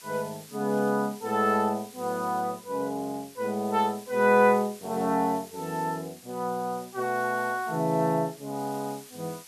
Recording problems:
hiss; slope +2 dB per octave, SNR 19 dB

